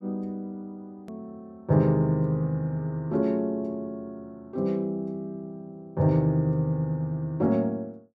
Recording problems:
hard cut with a click; at 1 s

